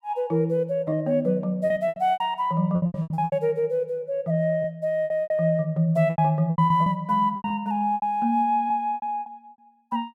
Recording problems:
packet loss; 14% of the sound replaced, filled with repeated pitch periods

